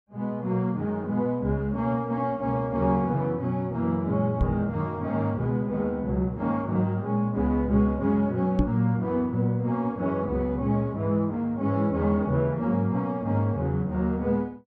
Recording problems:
knock on the microphone; at 4.5 s and at 8.5 s; peak +5 dB vs average level

